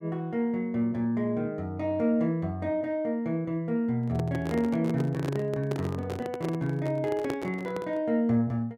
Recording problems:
handling noise; from 4 to 8 s; peak 0 dB vs average level

